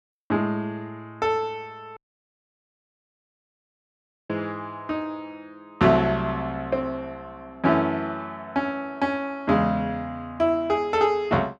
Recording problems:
audio cutting out; at 2 s for 2.5 s

